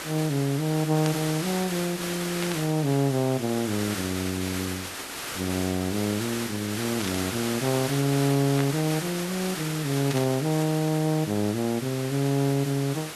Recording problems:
background hiss; slope -2 dB per octave, SNR 7 dB
burst of static; 5 times, first at 1 s; peak -3 dB vs average level

